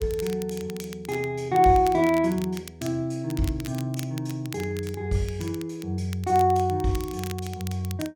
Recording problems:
crackle; vinyl, SNR 17 dB

